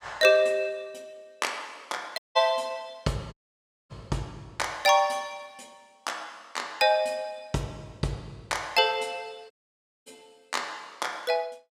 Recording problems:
audio cutting out; at 2 s, at 3.5 s for 0.5 s and at 9.5 s for 0.5 s

